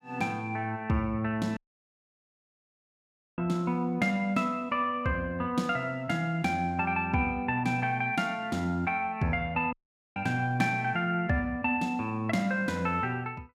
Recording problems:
audio cutting out; at 1.5 s for 2 s and at 9.5 s

